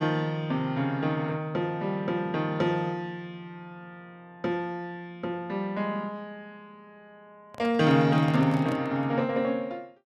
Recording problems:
microphone handling noise; from 7.5 to 9 s; peak -5 dB vs average level

